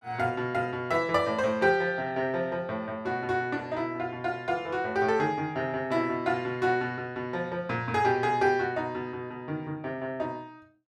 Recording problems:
none

